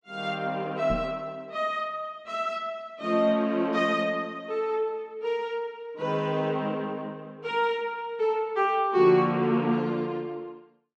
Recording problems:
microphone bump; at 1 s; peak -1 dB vs average level

